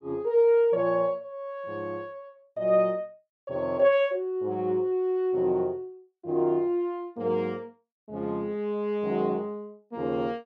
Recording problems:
none

